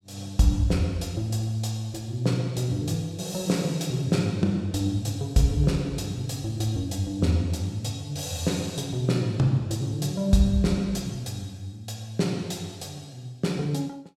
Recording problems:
none

